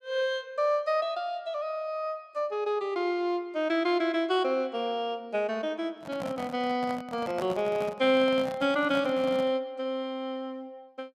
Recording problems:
microphone handling noise; from 6 to 9.5 s; peak -5 dB vs average level

